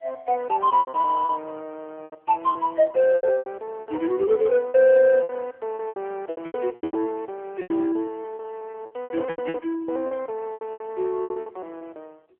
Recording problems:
phone line; 340 Hz to 3.1 kHz, AMR-NB
packet loss; 16% of the sound replaced, filled with repeated pitch periods

